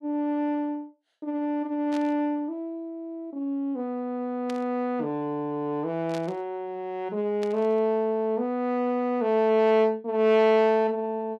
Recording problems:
static burst; 4 times, first at 2 s; peak -10 dB vs average level

